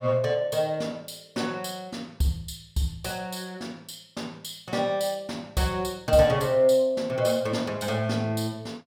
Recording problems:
none

